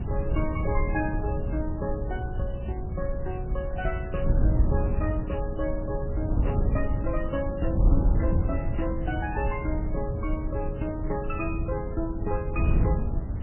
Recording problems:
codec artefacts; MP3, log-spectral distance 6 dB, nothing above 2.5 kHz
hiss; SNR 23 dB
wind on the microphone; below 120 Hz, SNR -3 dB

